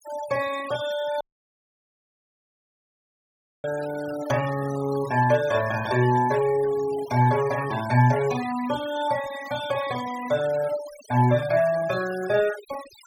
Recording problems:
noise reduction artefacts; signal-to-artefact ratio 15 dB
dropout; at 1 s for 2.5 s

